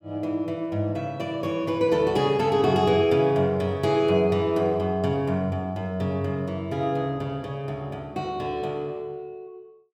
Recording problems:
none

